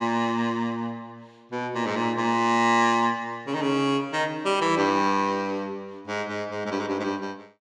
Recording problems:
none

